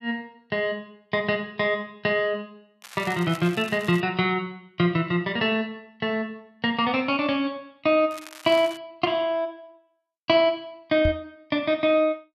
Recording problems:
crackle; from 3 to 4 s and at 8 s; loose cable, SNR 18 dB
microphone thump; at 11 s; peak +2 dB vs average level

